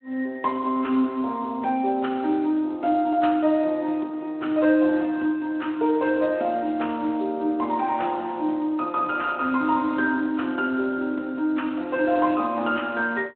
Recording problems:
phone line; 220 Hz to 3.7 kHz, Speex

